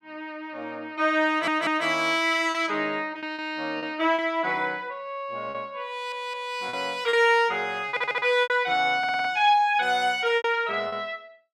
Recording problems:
lost packets; 6% of the sound replaced, filled with repeated pitch periods
audio stuttering; 4 times, first at 1.5 s

